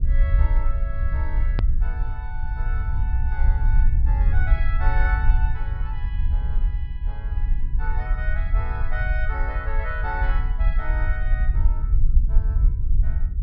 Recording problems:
low-pass filter; nothing above 5.5 kHz
low-frequency rumble; below 58 Hz, SNR -10 dB
click at an edit; at 1.5 s

